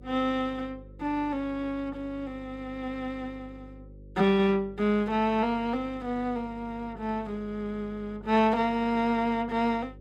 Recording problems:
hum; 50 Hz, harmonics up to 550 Hz, SNR 20 dB

